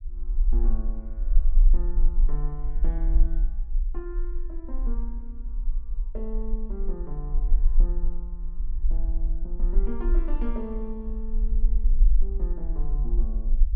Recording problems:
low-frequency rumble; below 38 Hz, strongest tone 22 Hz, SNR -11 dB

